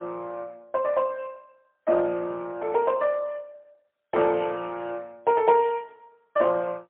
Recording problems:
telephone audio; 260 Hz to 3.3 kHz, AMR-NB, then MP3

